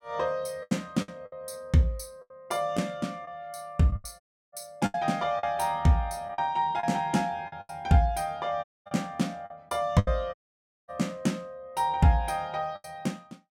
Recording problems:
lost packets; 8% of the sound replaced, filled with the last packet
audio cutting out; at 4 s, at 8.5 s and at 10 s for 0.5 s

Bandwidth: 17 kHz